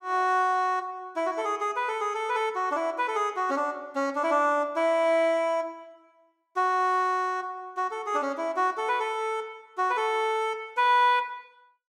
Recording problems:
none

